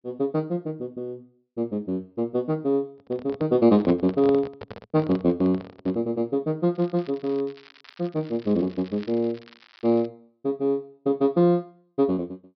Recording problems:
treble missing; nothing above 5.5 kHz
microphone handling noise; from 3 to 6 s; peak -4 dB vs average level
crackle; from 7 to 10 s; loose cable, SNR 25 dB

